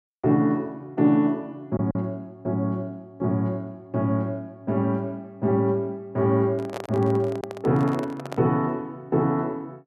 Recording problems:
packet loss; 1% of the sound replaced, filled with silence
handling noise; from 6.5 to 8.5 s; peak -4 dB vs average level

